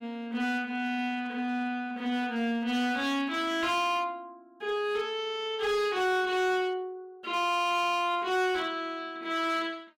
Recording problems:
distorted audio; hard clipping, signal-to-distortion ratio 12 dB

